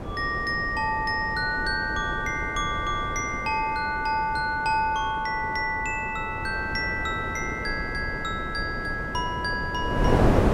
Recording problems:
wind noise; below 520 Hz, SNR 5 dB

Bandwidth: 16 kHz